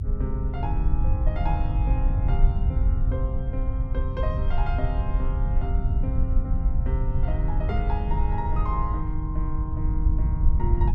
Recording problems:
rumble; below 72 Hz, SNR -8 dB

